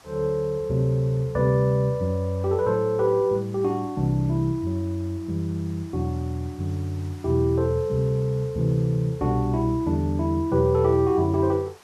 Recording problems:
hiss; SNR 27 dB

